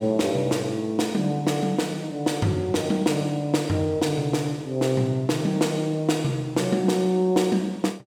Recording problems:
none

